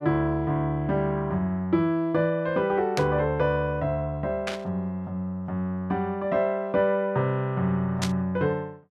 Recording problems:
static burst; at 3 s, at 4.5 s and at 8 s; peak +1 dB vs average level

